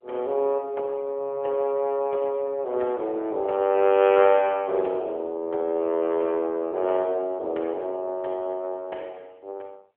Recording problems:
telephone audio; 300 Hz to 3.3 kHz, AMR-NB

